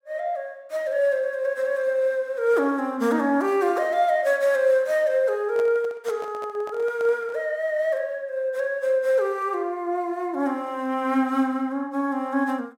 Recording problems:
microphone handling noise; from 5.5 to 7.5 s; peak -9 dB vs average level

